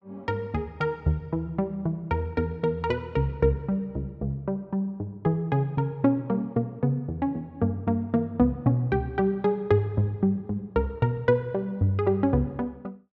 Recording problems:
none

